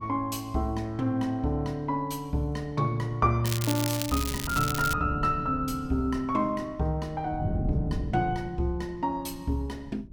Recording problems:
wind on the microphone; below 190 Hz, SNR 8 dB
crackling; from 3.5 to 5 s; loose cable, SNR 5 dB

